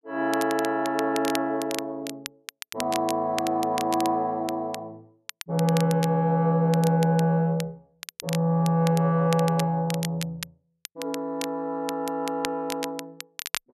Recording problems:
crackling; vinyl, SNR 13 dB

